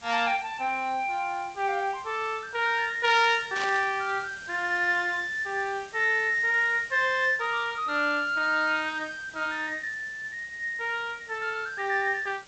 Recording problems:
lossy compression; G.722, log-spectral distance 6 dB
background hiss; slope -1 dB per octave, SNR 23 dB
burst of static; at 3.5 s; peak -4 dB vs average level

